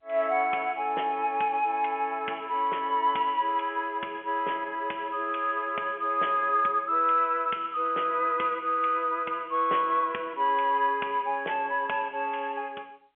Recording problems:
phone line; 340 Hz to 3.3 kHz, G.711

